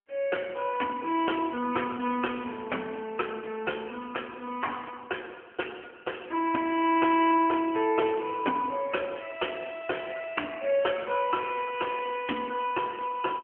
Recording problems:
telephone audio; 220 Hz to 3.1 kHz, AMR-NB

